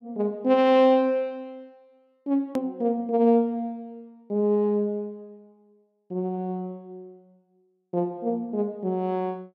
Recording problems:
edit click; at 2.5 s

